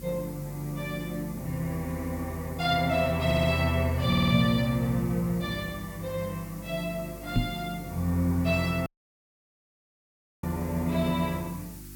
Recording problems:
electrical hum; 50 Hz, harmonics up to 350 Hz, SNR 18 dB
background hiss; SNR 19 dB
stutter; at 3.5 s and at 4 s
knock on the microphone; at 7.5 s; peak +5 dB vs average level
dropout; at 9 s for 1.5 s

